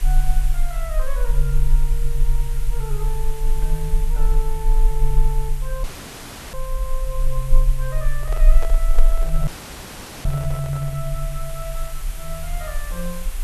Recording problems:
background hiss; slope -1 dB per octave, SNR 9 dB
low-frequency rumble; below 34 Hz, strongest tone 24 Hz, SNR -6 dB
dropout; at 6 s for 0.5 s and at 9.5 s for 1 s
handling noise; from 8 to 11 s; peak +1 dB vs average level

